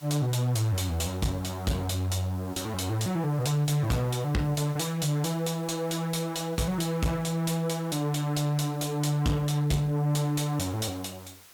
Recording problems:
distortion; soft clipping, signal-to-distortion ratio 10 dB
background hiss; slope 0 dB per octave, SNR 23 dB

